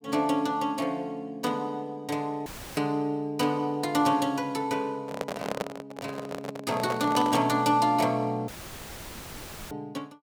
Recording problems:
audio cutting out; at 2.5 s and at 8.5 s for 1 s; filled with static
microphone handling noise; from 5 to 7.5 s; peak +1 dB vs average level

